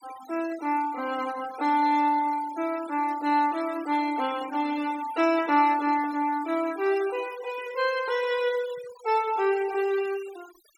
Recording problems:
denoising artefacts; signal-to-artefact ratio 18 dB

